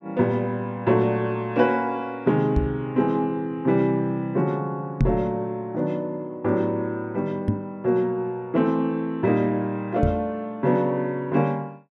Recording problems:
microphone bump; 4 times, first at 2.5 s; peak +6 dB vs average level

